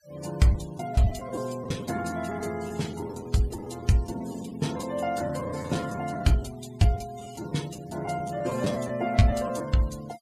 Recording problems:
noise reduction artefacts; signal-to-artefact ratio 18 dB
lost packets; 8% of the sound replaced, filled with the last packet

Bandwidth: 15 kHz